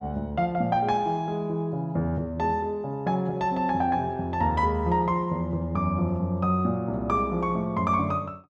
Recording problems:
none

